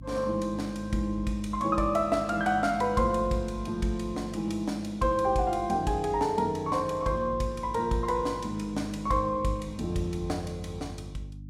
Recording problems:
hum; 50 Hz, harmonics up to 300 Hz, SNR 16 dB

